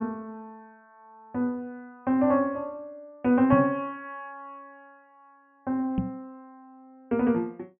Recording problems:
treble cut off; nothing above 3.2 kHz
microphone bump; at 3.5 s and at 6 s; peak +4 dB vs average level

